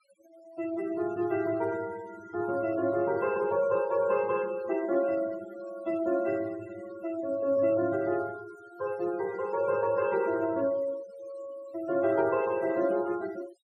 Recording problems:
noise reduction artefacts; signal-to-artefact ratio 18 dB

